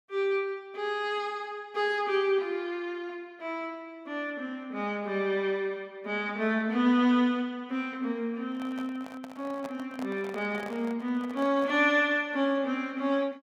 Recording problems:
handling noise; from 8.5 to 12 s; peak -8 dB vs average level

